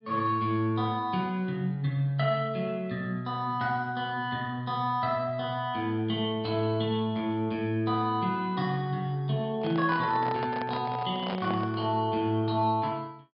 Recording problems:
treble cut off; nothing above 5.5 kHz
microphone handling noise; from 9.5 to 12 s; peak -3 dB vs average level

